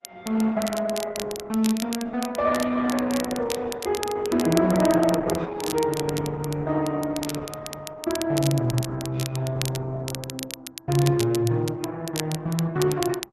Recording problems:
lossy compression; Opus, log-spectral distance 3 dB
crackle; vinyl, SNR 11 dB

